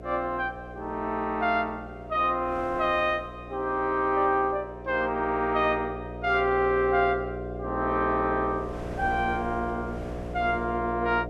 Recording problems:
electrical hum; 60 Hz, harmonics up to 720 Hz, SNR 11 dB
wind on the microphone; below 750 Hz, SNR 20 dB

